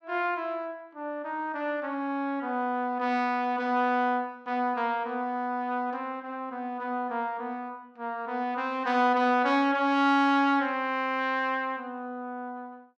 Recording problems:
none

